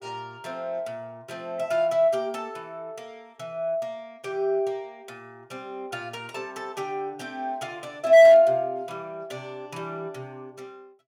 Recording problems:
distorted audio; hard clipping, signal-to-distortion ratio 12 dB

